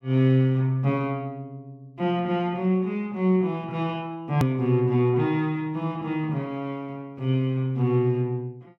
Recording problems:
click at an edit; at 4.5 s

